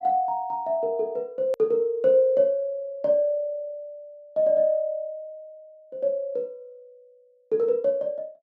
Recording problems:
hard cut with a click; at 1.5 s

